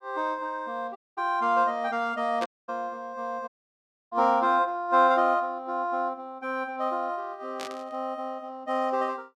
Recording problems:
dropout; at 1 s, at 2.5 s and at 3.5 s for 0.5 s
static burst; at 2.5 s and at 7.5 s; peak -4 dB vs average level

